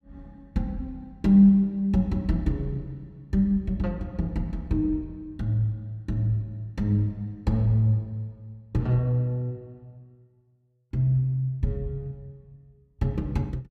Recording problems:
none

